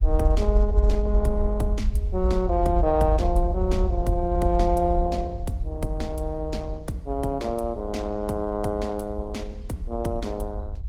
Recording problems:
lossy codec; Opus, log-spectral distance 2 dB
rumble; below 64 Hz, SNR 0 dB

